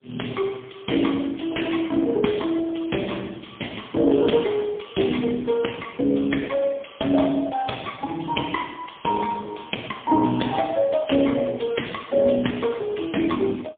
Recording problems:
telephone audio; 150 Hz to 3.5 kHz, AMR-NB, then MP3

